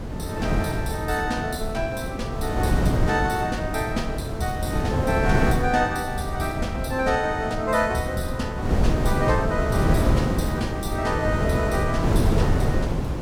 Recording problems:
wind noise; below 300 Hz, SNR -1 dB

